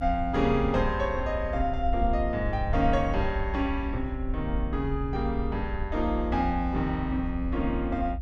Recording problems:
rumble; below 64 Hz, SNR 5 dB

